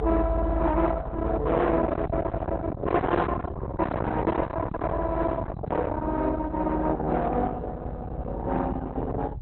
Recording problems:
lossy codec; Opus, log-spectral distance 2 dB, nothing above 4 kHz
distortion; soft clipping, signal-to-distortion ratio 6 dB
rumble; below 660 Hz, SNR 6 dB

